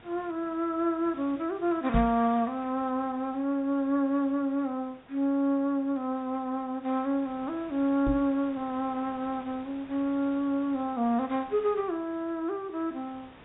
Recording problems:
treble missing; nothing above 3.7 kHz
hiss; SNR 23 dB
microphone bump; at 2 s and at 8 s; peak +4 dB vs average level

